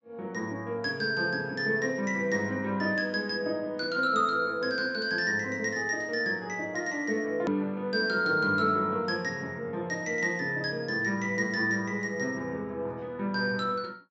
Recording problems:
low-pass filter; nothing above 8 kHz
click at an edit; at 7.5 s

